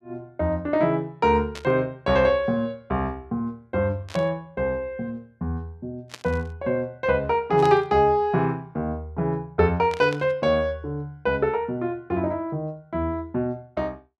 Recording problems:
burst of static; 5 times, first at 1.5 s; peak -8 dB vs average level

